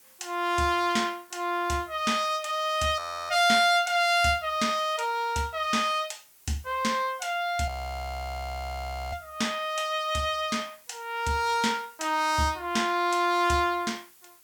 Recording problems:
background hiss; slope 0 dB per octave, SNR 27 dB
frozen audio; at 3 s and at 7.5 s for 1.5 s

